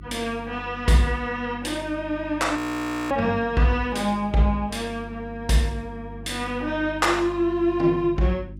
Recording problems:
electrical hum; 50 Hz, harmonics up to 350 Hz, SNR 16 dB
frozen audio; at 2.5 s for 0.5 s

